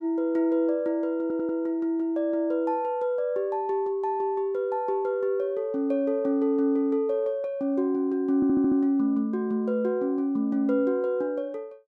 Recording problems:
audio stuttering; at 1 s and at 8.5 s

